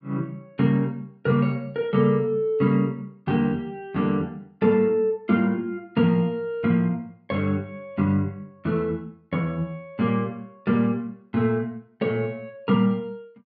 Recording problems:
treble missing; nothing above 5.5 kHz

